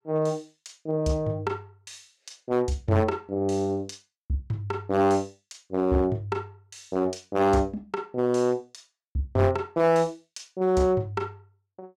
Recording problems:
distorted audio; hard clipping, uneven, signal-to-distortion ratio 12 dB

